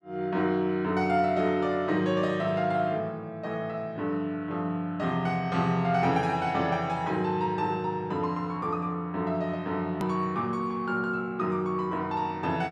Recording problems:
click at an edit; at 10 s

